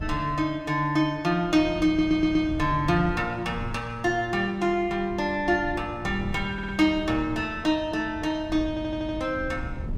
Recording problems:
wind on the microphone; below 150 Hz, SNR 13 dB
stutter; at 2 s, at 6.5 s and at 8.5 s

